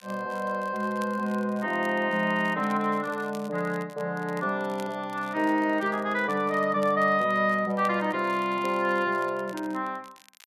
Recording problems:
crackling; vinyl, SNR 25 dB

